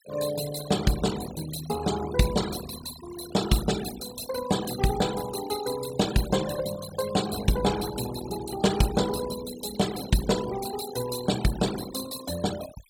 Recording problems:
denoising artefacts; signal-to-artefact ratio 10 dB

